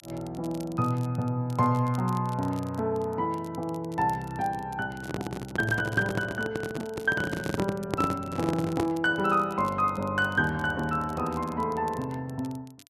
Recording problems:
crackling; vinyl, SNR 23 dB
microphone handling noise; from 5 to 9 s; peak +4 dB vs average level

